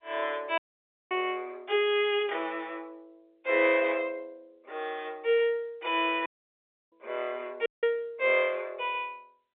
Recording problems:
phone line; 340 Hz to 3.6 kHz, G.711
dropout; at 0.5 s for 0.5 s, at 6.5 s for 0.5 s and at 7.5 s

